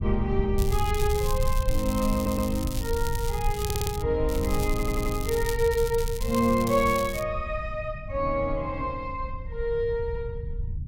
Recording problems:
low-frequency rumble; below 86 Hz, SNR 5 dB
crackle; from 0.5 to 4 s and from 4.5 to 7 s; loose cable, SNR 10 dB
audio stuttering; at 2 s, at 3.5 s and at 4.5 s

